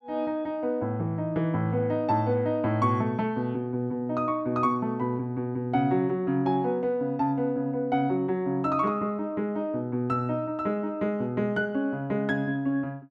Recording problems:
none

